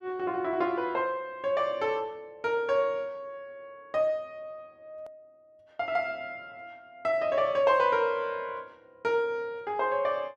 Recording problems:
click at an edit; at 5 s

